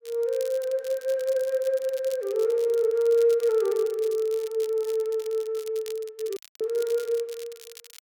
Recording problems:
crackling; vinyl, SNR 20 dB
audio cutting out; at 6.5 s

